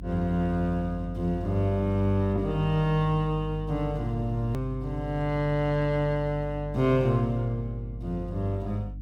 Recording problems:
mains hum; 50 Hz, harmonics up to 300 Hz, SNR 10 dB
edit click; at 4.5 s

